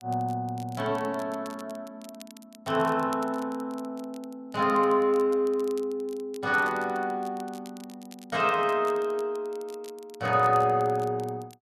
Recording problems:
crackling; vinyl, SNR 24 dB

